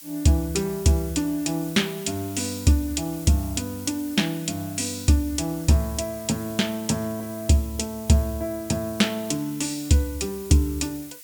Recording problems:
hiss; slope +4 dB per octave, SNR 16 dB

